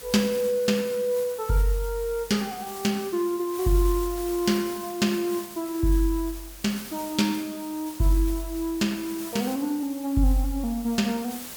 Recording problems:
hiss; slope -1 dB per octave, SNR 13 dB

